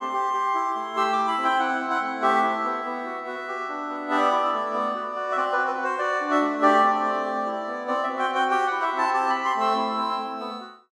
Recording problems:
none

